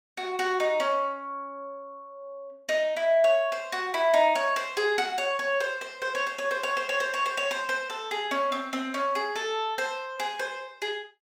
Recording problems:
none

